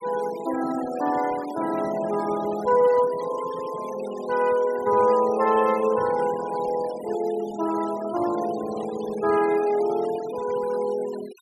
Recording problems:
noise reduction artefacts; signal-to-artefact ratio 17 dB

